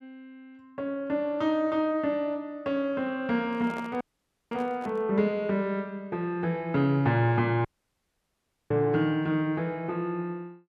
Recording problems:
handling noise; from 3.5 to 5 s; peak -9 dB vs average level
audio cutting out; at 4 s for 0.5 s and at 7.5 s for 1 s

